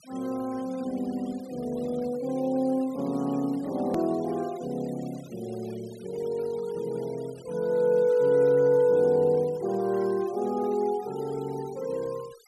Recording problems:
denoising artefacts; signal-to-artefact ratio 24 dB
click at an edit; at 4 s

